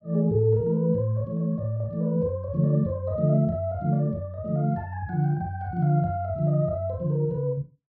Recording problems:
none

